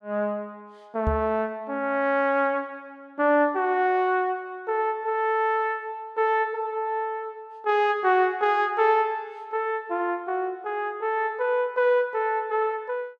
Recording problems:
knock on the microphone; at 1 s; peak +1 dB vs average level

